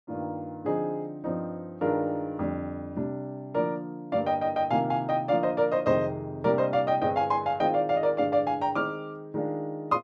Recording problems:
none

